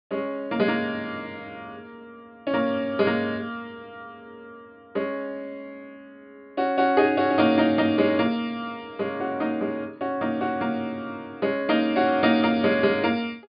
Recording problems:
low-pass filter; nothing above 5 kHz

